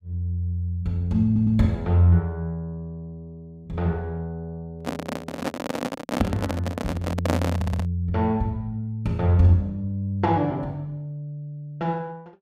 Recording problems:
stutter; at 1.5 s and at 7.5 s
microphone handling noise; from 5 to 8 s; peak +4 dB vs average level

